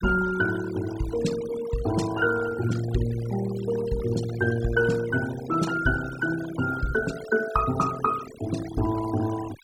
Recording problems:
denoising artefacts; signal-to-artefact ratio 13 dB

